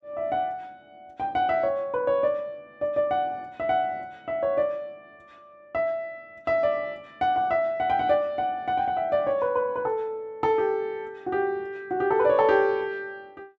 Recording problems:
none

